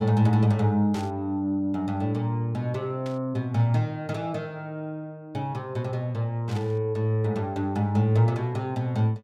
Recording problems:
burst of static; at 1 s, at 3 s and at 6.5 s; peak -11 dB vs average level

